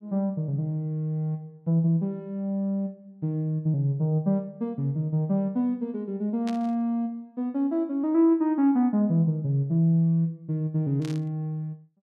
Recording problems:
static burst; at 6.5 s and at 11 s; peak -11 dB vs average level

